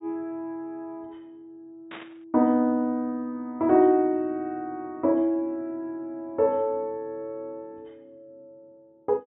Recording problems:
low-pass filter; nothing above 4 kHz
static burst; at 2 s; peak -11 dB vs average level

